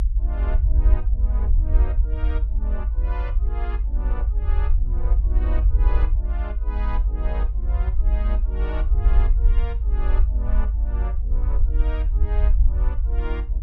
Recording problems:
low-frequency rumble; below 52 Hz, SNR -15 dB

